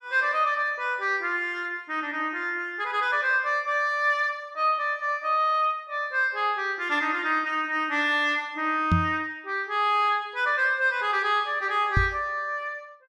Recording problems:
microphone thump; at 9 s and at 12 s; peak +6 dB vs average level

